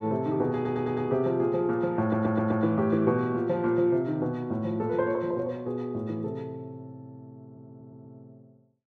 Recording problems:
stutter; at 0.5 s, at 2 s and at 7.5 s

